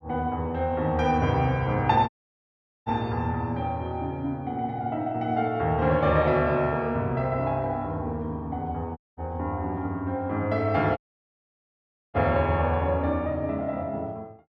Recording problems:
audio cutting out; at 2 s for 1 s, at 9 s and at 11 s for 1 s

